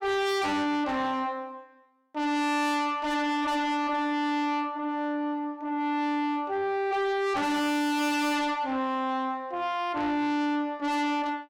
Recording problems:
distorted audio; soft clipping, signal-to-distortion ratio 6 dB

